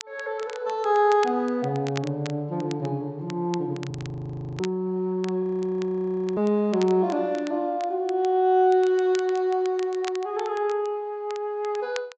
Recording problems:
treble cut off; nothing above 8 kHz
crackle; vinyl, SNR 19 dB
audio freezing; at 4 s for 0.5 s and at 5.5 s for 1 s

